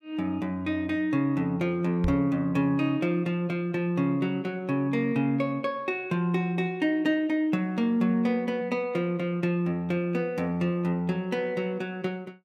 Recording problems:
microphone thump; at 2 s; peak +1 dB vs average level

